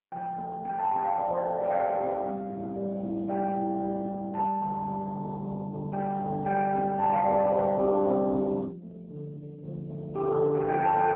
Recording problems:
phone line; 900 Hz to 2.1 kHz, AMR-NB

